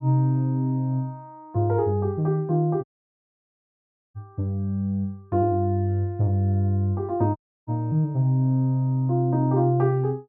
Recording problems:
dropout; at 3 s for 1.5 s and at 7.5 s

